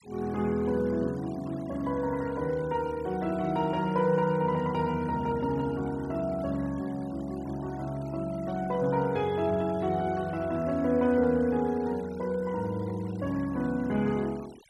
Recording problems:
denoising artefacts; signal-to-artefact ratio 22 dB

